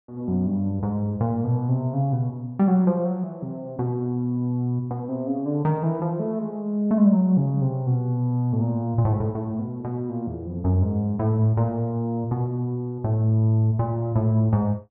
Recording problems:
none

